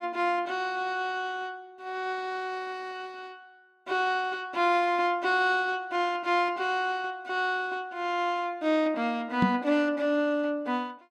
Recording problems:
microphone thump; at 9.5 s; peak +8 dB vs average level

